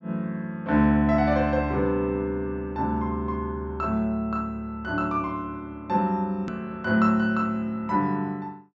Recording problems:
low-pass filter; nothing above 8 kHz
hard cut with a click; at 6.5 s

